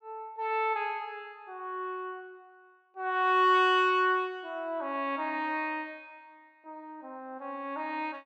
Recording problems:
none

